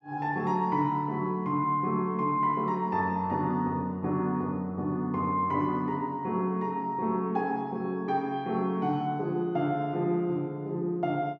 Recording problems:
none

